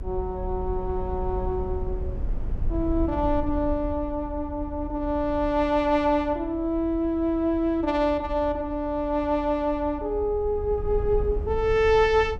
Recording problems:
low-frequency rumble; below 72 Hz, SNR 10 dB

